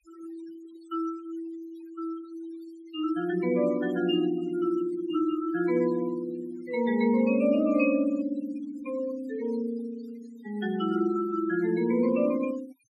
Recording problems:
denoising artefacts; signal-to-artefact ratio 19 dB

